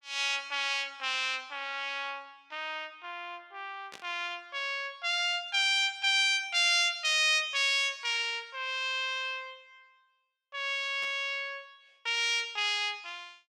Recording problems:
static burst; at 4 s and at 11 s; peak -12 dB vs average level

